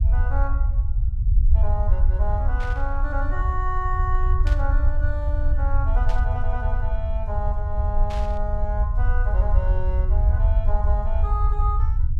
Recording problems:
rumble; below 66 Hz, SNR -8 dB
static burst; 4 times, first at 2.5 s; peak -4 dB vs average level

